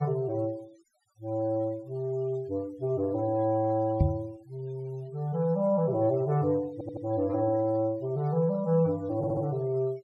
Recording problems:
noise reduction artefacts; signal-to-artefact ratio 28 dB
microphone thump; at 4 s; peak +8 dB vs average level
audio stuttering; at 6.5 s and at 9 s

